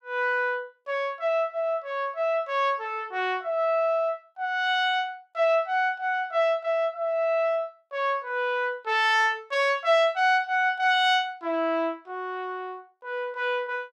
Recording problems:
none

